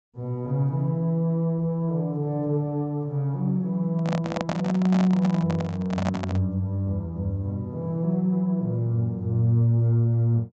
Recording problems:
treble missing; nothing above 8 kHz
handling noise; from 4 to 6.5 s; peak +1 dB vs average level

